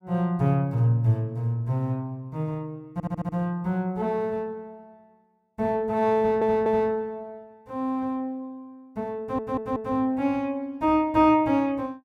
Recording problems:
audio stuttering; at 3 s, at 6 s and at 9 s

